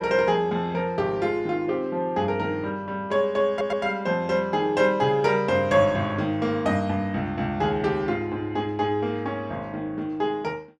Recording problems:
audio stuttering; at 3.5 s

